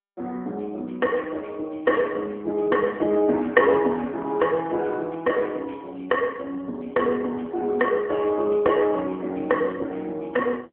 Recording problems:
telephone audio; 220 Hz to 3.3 kHz, AMR-NB

